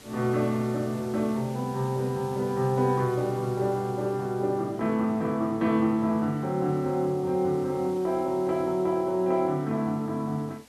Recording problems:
hiss; slope -3 dB per octave, SNR 23 dB

